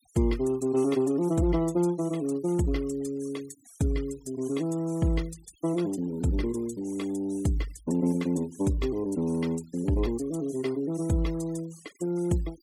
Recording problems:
noise reduction artefacts; signal-to-artefact ratio 22 dB

